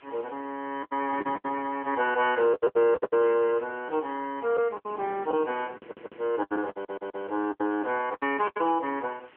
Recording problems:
phone line; 280 Hz to 3.3 kHz, AMR-NB
background hiss; SNR 27 dB
wind on the microphone; below 510 Hz, SNR 19 dB
lost packets; 13% of the sound replaced, filled with the last packet
audio stuttering; at 6 s and at 6.5 s

